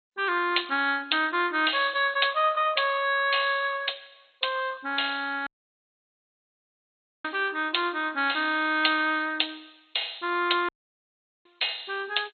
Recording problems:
lossy codec; MP2, log-spectral distance 12 dB, nothing above 4.2 kHz
dropout; at 5.5 s for 2 s and at 11 s for 1 s

